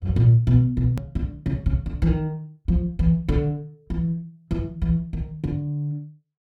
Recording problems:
hard cut with a click; at 1 s

